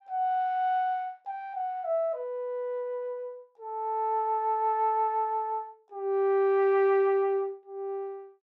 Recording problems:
none

